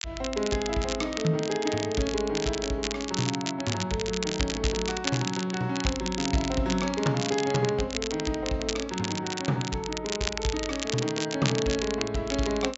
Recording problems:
low-pass filter; nothing above 8 kHz
crackling; vinyl, SNR 5 dB

